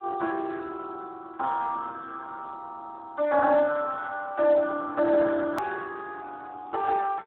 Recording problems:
phone line; 280 Hz to 2.6 kHz, Speex
click at an edit; at 5.5 s

